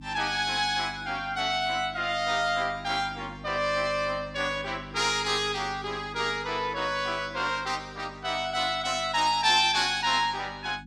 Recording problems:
electrical hum; 50 Hz, harmonics up to 300 Hz, SNR 19 dB

